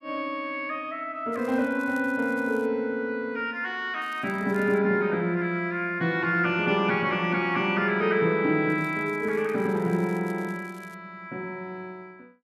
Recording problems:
crackling; from 1.5 to 2.5 s, at 4 s and from 8.5 to 11 s; loose cable, SNR 29 dB

